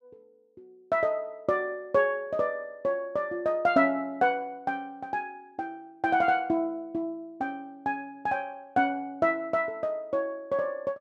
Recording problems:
none

